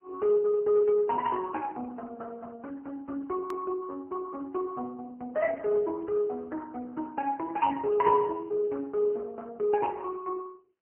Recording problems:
phone line; 320 Hz to 2.8 kHz, AMR-NB
edit click; at 3.5 s

